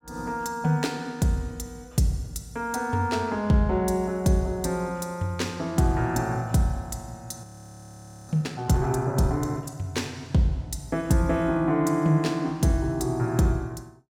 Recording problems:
audio freezing; at 7.5 s for 1 s

